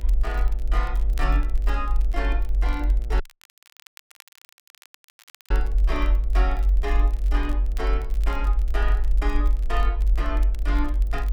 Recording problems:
mains hum; 60 Hz, harmonics up to 1.4 kHz, SNR 15 dB
rumble; below 48 Hz, strongest tone 48 Hz, SNR -8 dB
crackling; vinyl, SNR 19 dB
audio cutting out; at 3 s for 2.5 s

